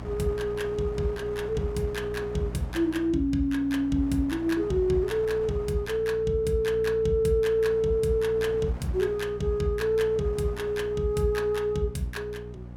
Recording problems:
hum; 60 Hz, harmonics up to 600 Hz, SNR 15 dB
wind noise; below 920 Hz, SNR 20 dB

